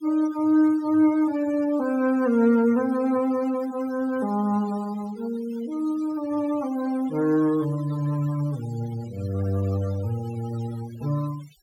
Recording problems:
noise reduction artefacts; signal-to-artefact ratio 20 dB

